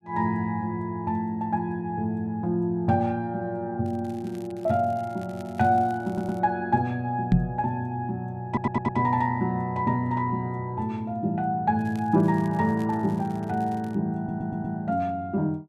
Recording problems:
crackling; from 4 to 6.5 s and from 12 to 14 s; loose cable, SNR 28 dB
audio stuttering; at 6 s, at 8.5 s and at 14 s
microphone thump; at 7.5 s; peak +9 dB vs average level

